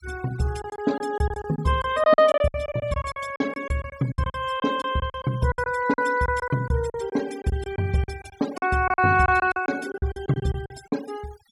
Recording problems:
noise reduction artefacts; signal-to-artefact ratio 19 dB
lost packets; 15% of the sound replaced, filled with silence

